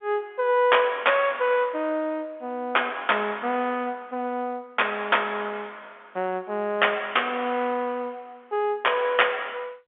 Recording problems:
telephone audio; 170 Hz to 3.5 kHz, G.711

